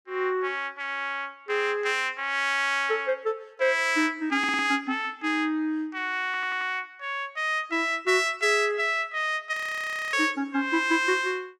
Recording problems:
stutter; at 4.5 s and at 6.5 s
frozen audio; at 9.5 s for 0.5 s

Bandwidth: 16 kHz